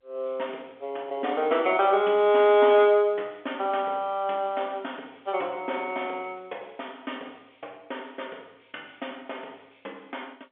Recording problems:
telephone audio; 320 Hz to 3.5 kHz, G.711

